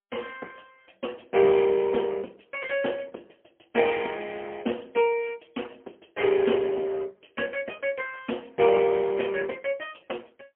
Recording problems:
telephone audio; 260 Hz to 3.3 kHz, AMR-NB, then MP3

